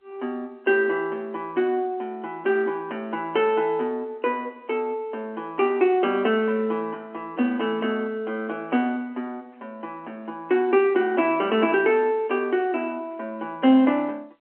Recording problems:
phone line; 240 Hz to 3.2 kHz, G.711

